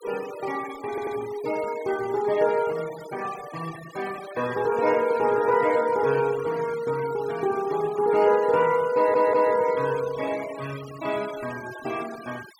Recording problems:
denoising artefacts; signal-to-artefact ratio 18 dB
audio stuttering; at 1 s and at 9 s

